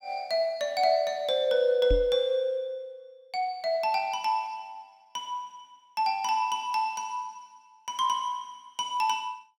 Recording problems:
knock on the microphone; at 2 s; peak +3 dB vs average level

